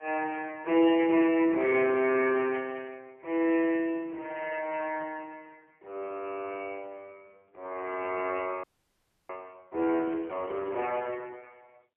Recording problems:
phone line; 280 Hz to 3.5 kHz, AMR-NB, then MP3
crackling; at 2 s and at 10 s; loose cable, SNR 29 dB
audio freezing; at 8.5 s for 0.5 s

